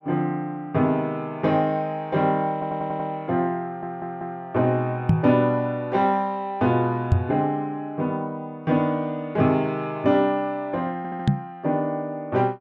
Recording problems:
audio stuttering; at 2.5 s, at 3.5 s and at 11 s
microphone bump; at 5 s, at 7 s and at 11 s; peak +9 dB vs average level

